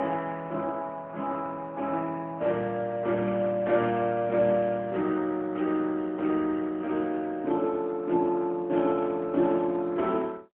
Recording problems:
telephone audio; 190 Hz to 3.3 kHz, AMR-NB, then MP3

